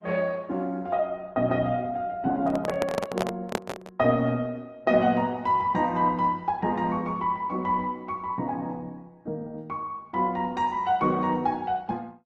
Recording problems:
codec artefacts; Opus, log-spectral distance 2 dB
microphone handling noise; from 2.5 to 4 s; peak +4 dB vs average level

